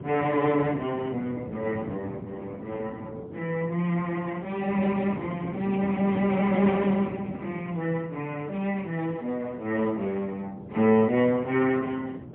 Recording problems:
phone line; 150 Hz to 3.6 kHz, AMR-NB, then MP3
wind noise; below 370 Hz, SNR 12 dB

